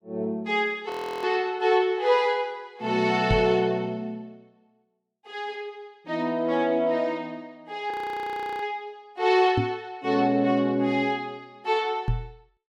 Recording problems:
frozen audio; at 1 s and at 8 s for 0.5 s
microphone bump; at 3.5 s, at 9.5 s and at 12 s; peak +3 dB vs average level

